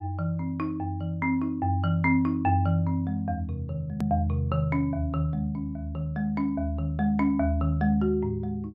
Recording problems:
hard cut with a click; at 4 s

